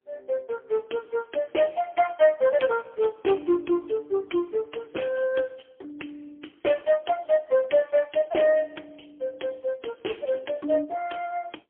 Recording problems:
telephone audio; 260 Hz to 3.3 kHz, AMR-NB, then MP3

